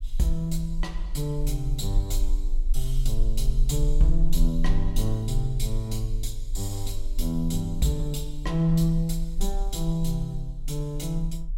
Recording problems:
low-frequency rumble; below 38 Hz, strongest tone 26 Hz, SNR 3 dB

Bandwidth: 16 kHz